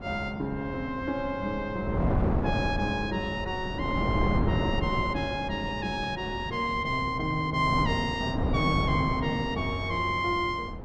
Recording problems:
wind noise; below 360 Hz, SNR 3 dB

